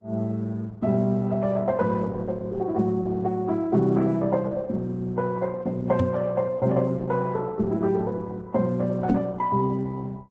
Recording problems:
codec artefacts; Vorbis, then Opus, log-spectral distance 2 dB, nothing above 7.6 kHz
microphone thump; at 6 s and at 9 s; peak +7 dB vs average level

